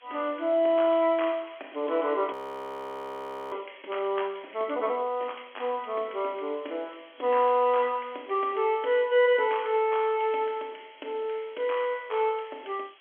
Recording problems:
phone line; 260 Hz to 3.4 kHz, G.711
background hiss; SNR 27 dB
frozen audio; at 2.5 s for 1 s

